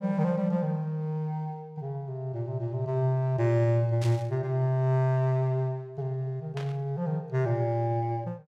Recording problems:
static burst; at 4 s and at 6.5 s; peak -8 dB vs average level

